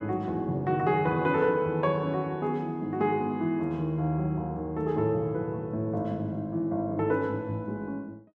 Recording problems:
none

